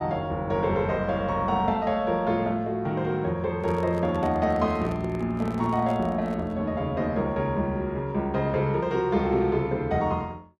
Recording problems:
handling noise; from 3.5 to 6.5 s; peak -9 dB vs average level

